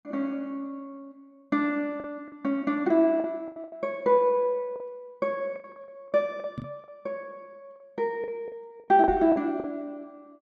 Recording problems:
packet loss; 9% of the sound replaced, filled with the last packet
knock on the microphone; at 6.5 s and at 9 s; peak -4 dB vs average level

